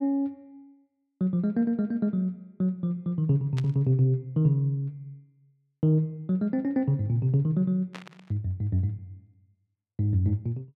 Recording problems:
burst of static; at 3.5 s and at 8 s; peak -10 dB vs average level

